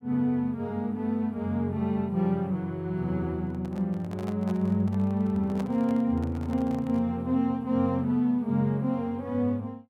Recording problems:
microphone handling noise; from 3.5 to 7 s; peak -8 dB vs average level

